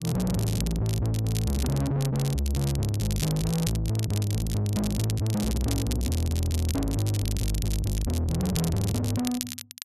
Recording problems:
distortion; soft clipping, signal-to-distortion ratio 6 dB
crackling; vinyl, SNR 10 dB

